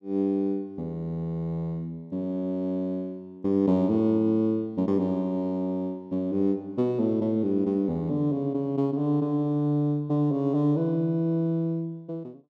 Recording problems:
none

